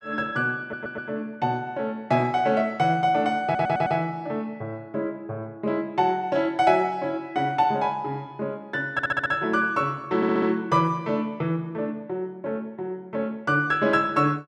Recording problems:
audio stuttering; 4 times, first at 0.5 s

